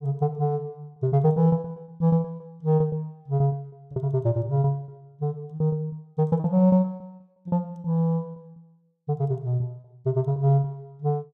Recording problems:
lost packets; 15% of the sound replaced, filled with repeated pitch periods

